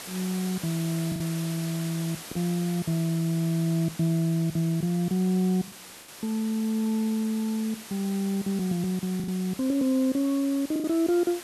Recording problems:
hiss; slope -1 dB per octave, SNR 13 dB
packet loss; 3% of the sound replaced, filled with the last packet

